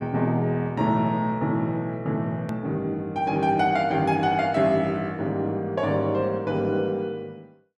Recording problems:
edit click; at 2.5 s

